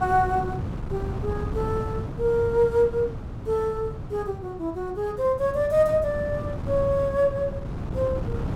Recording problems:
wind on the microphone; below 220 Hz, SNR 8 dB

